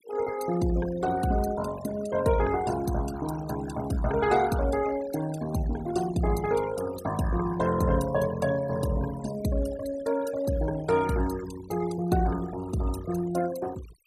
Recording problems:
denoising artefacts; signal-to-artefact ratio 14 dB

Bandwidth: 14.5 kHz